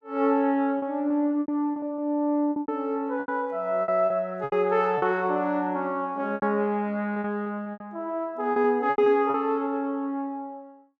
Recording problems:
packet loss; 10% of the sound replaced, filled with repeated pitch periods

